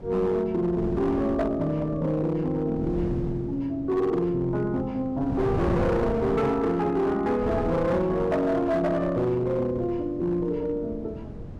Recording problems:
distortion; hard clipping, signal-to-distortion ratio 11 dB
wind on the microphone; below 310 Hz, SNR 10 dB

